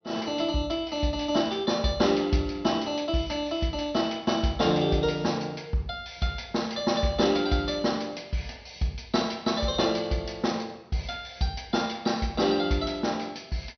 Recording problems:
treble missing; nothing above 5.9 kHz

